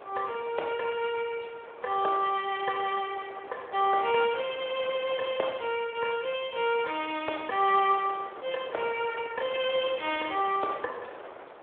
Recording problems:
phone line; 340 Hz to 3.6 kHz, Speex
wind on the microphone; below 1.3 kHz, SNR 16 dB

